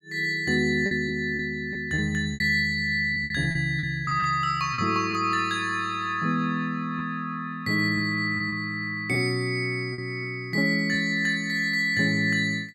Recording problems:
lost packets; 5% of the sound replaced, filled with repeated pitch periods

